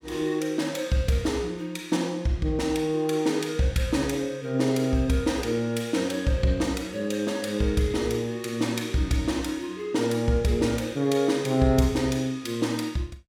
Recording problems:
none

